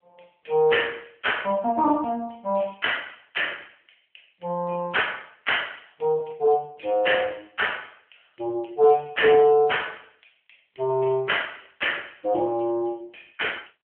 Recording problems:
telephone audio; 260 Hz to 3.2 kHz, AMR-NB

